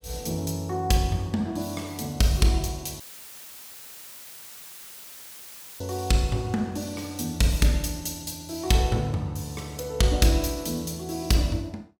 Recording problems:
audio cutting out; at 3 s for 3 s; filled with static

